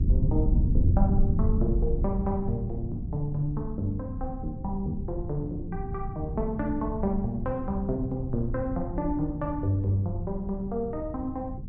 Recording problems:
rumble; below 110 Hz, SNR 1 dB

